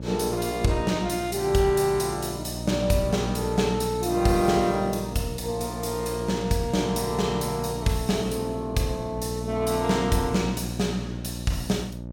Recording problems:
hum; 60 Hz, harmonics up to 840 Hz, SNR 9 dB

